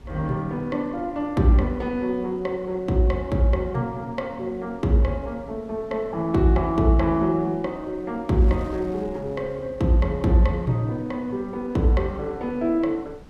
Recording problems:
wind noise; below 320 Hz, SNR 22 dB

